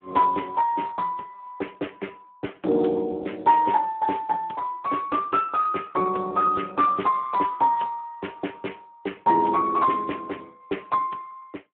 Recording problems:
phone line; 240 Hz to 2.9 kHz, Speex

